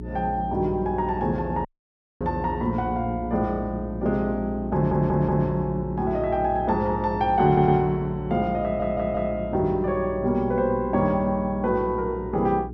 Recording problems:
electrical hum; 60 Hz, harmonics up to 420 Hz, SNR 11 dB
audio cutting out; at 1.5 s for 0.5 s
stutter; at 4.5 s, at 7.5 s and at 8.5 s

